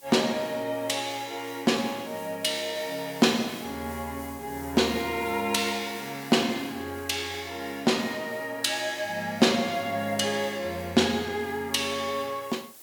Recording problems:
hiss; SNR 19 dB

